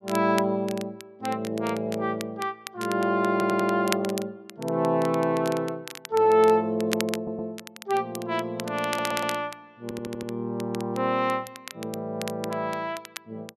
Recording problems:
crackling; vinyl, SNR 14 dB
stutter; 4 times, first at 3.5 s

